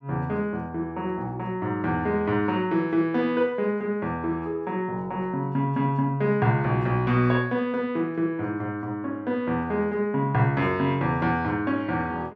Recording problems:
none

